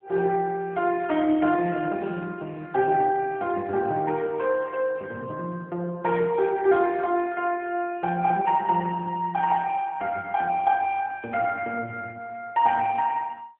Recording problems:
phone line; 260 Hz to 3.2 kHz, AMR-NB

